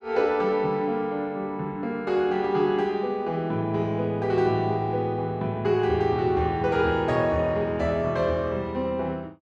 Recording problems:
none

